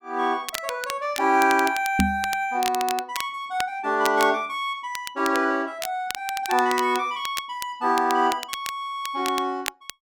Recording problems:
crackling; vinyl, SNR 11 dB
knock on the microphone; at 2 s; peak +6 dB vs average level

